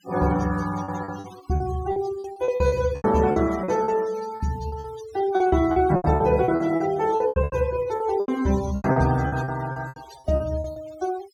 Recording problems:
noise reduction artefacts; signal-to-artefact ratio 17 dB
packet loss; 17% of the sound replaced, filled with repeated pitch periods

